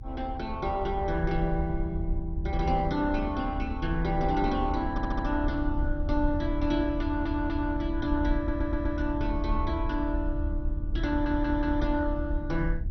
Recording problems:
lossy compression; MP2, log-spectral distance 2 dB, nothing above 6 kHz
low-frequency rumble; below 72 Hz, SNR 4 dB
audio stuttering; 4 times, first at 5 s

